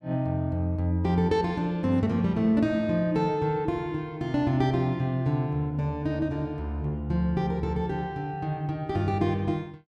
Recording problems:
none

